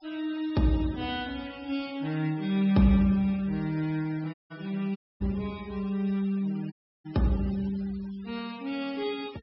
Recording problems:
low-pass filter; nothing above 5.5 kHz
noise reduction artefacts; signal-to-artefact ratio 22 dB
dropout; at 4.5 s, at 5 s and at 6.5 s

